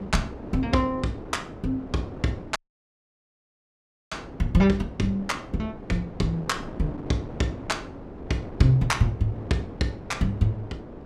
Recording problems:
wind noise; below 500 Hz, SNR 12 dB
dropout; at 2.5 s for 1.5 s

